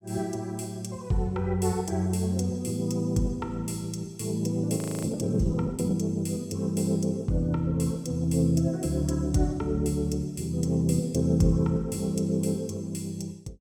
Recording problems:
audio freezing; at 5 s

